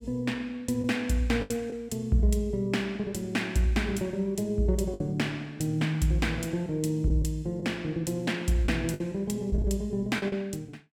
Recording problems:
packet loss; 4% of the sound replaced, filled with the last packet

